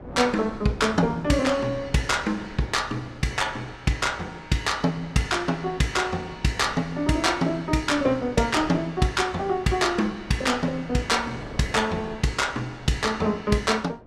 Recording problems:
wind noise; below 570 Hz, SNR 18 dB

